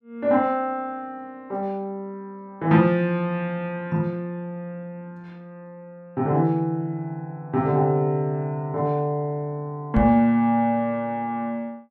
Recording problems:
microphone thump; at 10 s; peak +2 dB vs average level

